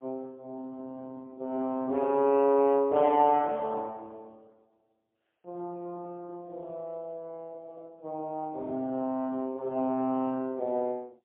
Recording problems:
telephone audio; 190 Hz to 3.4 kHz, AMR-NB, then MP3

